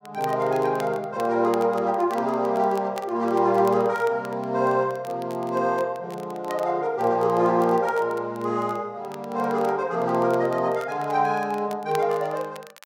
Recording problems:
crackle; vinyl, SNR 24 dB

